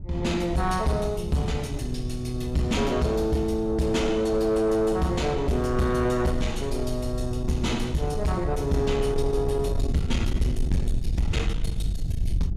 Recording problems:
distortion; soft clipping, signal-to-distortion ratio 11 dB
low-frequency rumble; below 78 Hz, SNR 8 dB
wind noise; below 150 Hz, SNR 12 dB

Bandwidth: 14.5 kHz